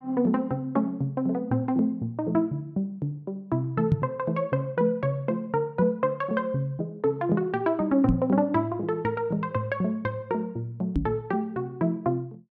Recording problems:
microphone thump; at 4 s, at 8 s and at 11 s; peak +7 dB vs average level

